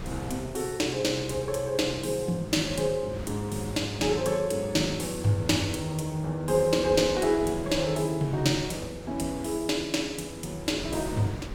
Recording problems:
wind noise; below 430 Hz, SNR 14 dB

